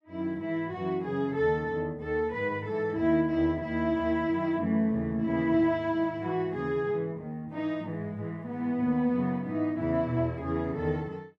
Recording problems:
none

